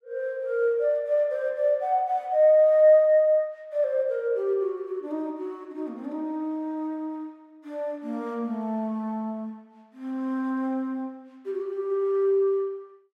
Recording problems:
none

